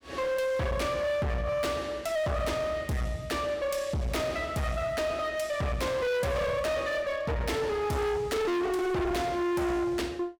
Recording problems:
distortion; hard clipping, uneven, signal-to-distortion ratio 5 dB

